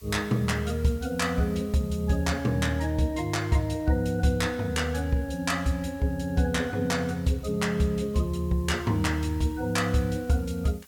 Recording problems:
hiss; slope +2 dB per octave, SNR 27 dB

